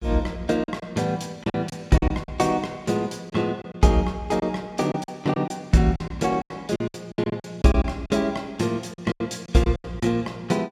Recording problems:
lost packets; 11% of the sound replaced, filled with silence

